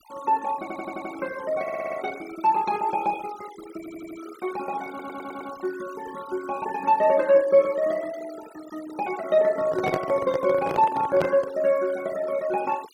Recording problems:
denoising artefacts; signal-to-artefact ratio 19 dB
stutter; 4 times, first at 0.5 s
microphone handling noise; from 9.5 to 12 s; peak +1 dB vs average level

